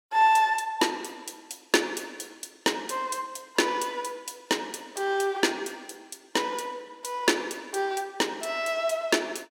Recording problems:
none

